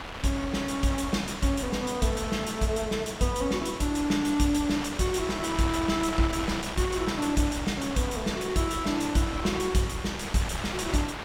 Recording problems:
wind on the microphone; below 2.7 kHz, SNR 9 dB

